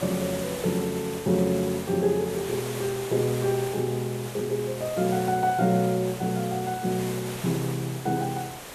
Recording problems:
hiss; slope -4 dB per octave, SNR 10 dB

